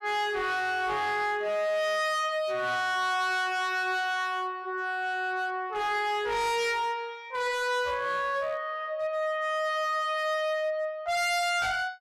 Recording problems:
distortion; hard clipping, signal-to-distortion ratio 6 dB

